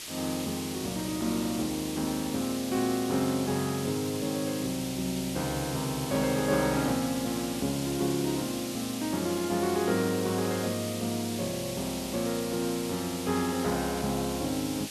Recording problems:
hiss; SNR 7 dB

